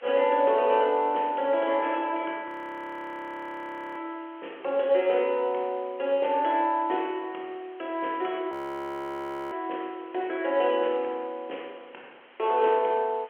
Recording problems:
phone line; 300 Hz to 3.3 kHz, G.711
hiss; SNR 26 dB
audio freezing; at 2.5 s for 1.5 s and at 8.5 s for 1 s

